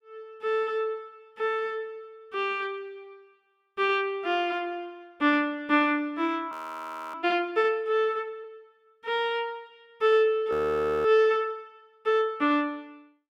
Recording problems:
audio freezing; at 6.5 s for 0.5 s and at 11 s for 0.5 s

